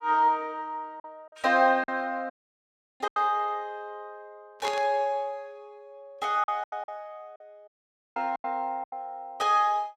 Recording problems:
lost packets; 9% of the sound replaced, filled with silence
dropout; at 2.5 s for 0.5 s and at 7.5 s
burst of static; at 4.5 s; peak -3 dB vs average level

